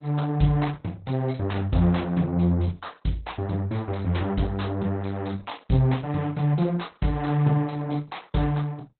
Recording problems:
lossy compression; Opus, log-spectral distance 5 dB, nothing above 4.1 kHz

